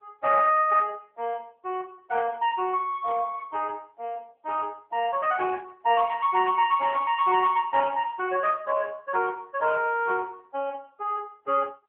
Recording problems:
telephone audio; 300 Hz to 3.3 kHz, AMR-NB

